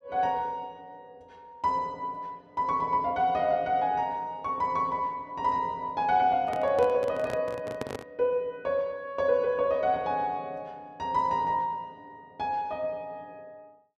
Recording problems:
handling noise; from 6.5 to 8 s; peak -2 dB vs average level

